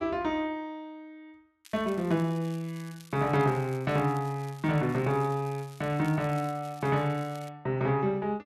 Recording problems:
crackling; from 1.5 to 7.5 s; loose cable, SNR 24 dB

